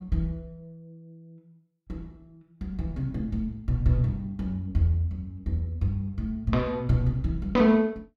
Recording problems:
none

